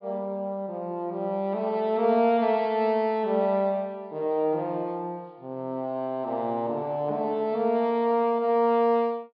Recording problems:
low-pass filter; nothing above 5.5 kHz

